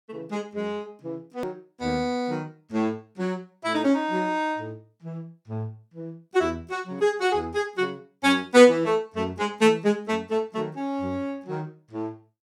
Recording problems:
hard cut with a click; at 1.5 s

